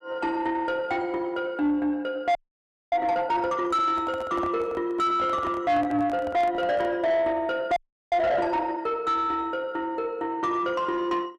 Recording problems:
distorted audio; soft clipping, signal-to-distortion ratio 6 dB
audio freezing; at 2.5 s for 0.5 s and at 8 s
handling noise; from 3.5 to 7 s; peak -3 dB vs average level

